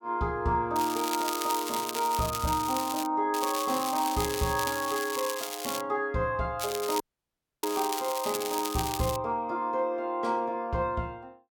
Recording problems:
crackle; from 1 to 3 s, from 3.5 to 6 s and from 6.5 to 9 s; loose cable, SNR 6 dB
dropout; at 7 s for 0.5 s

